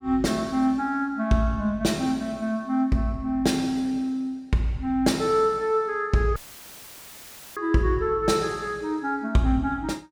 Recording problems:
audio cutting out; at 6.5 s for 1 s; filled with static

